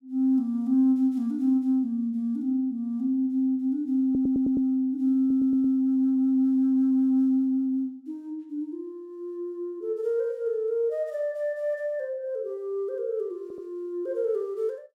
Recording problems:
audio stuttering; at 4 s, at 5 s and at 13 s

